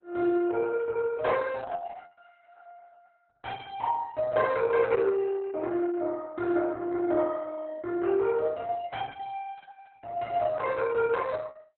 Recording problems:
lossy codec; Opus, log-spectral distance 3 dB

